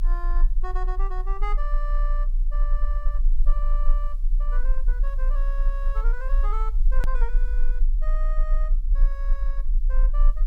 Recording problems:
hiss; SNR 29 dB
rumble; below 32 Hz, strongest tone 30 Hz, SNR -13 dB
hard cut with a click; at 7 s

